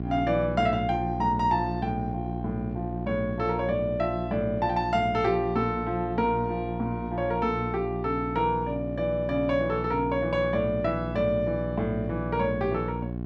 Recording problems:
hum; 60 Hz, harmonics up to 780 Hz, SNR 6 dB

